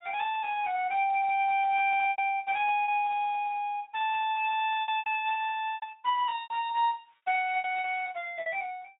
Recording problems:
treble cut off; nothing above 3.7 kHz
codec artefacts; Speex, log-spectral distance 2 dB
lost packets; 8% of the sound replaced, filled with repeated pitch periods

